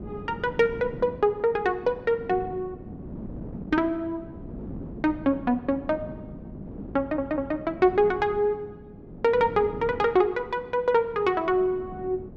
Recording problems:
wind on the microphone; below 310 Hz, SNR 15 dB
audio stuttering; at 7 s

